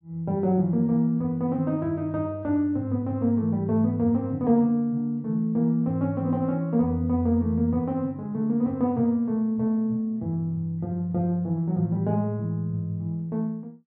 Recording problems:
none

